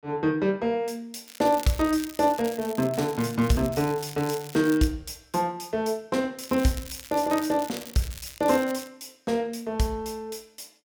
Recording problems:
crackle; from 1.5 to 3.5 s, from 3.5 to 5 s and from 6.5 to 9 s; loose cable, SNR 15 dB

